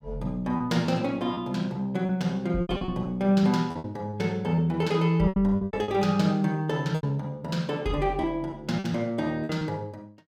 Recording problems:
lost packets; 10% of the sound replaced, filled with repeated pitch periods

